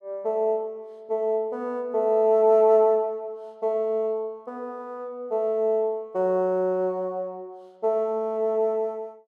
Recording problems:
none

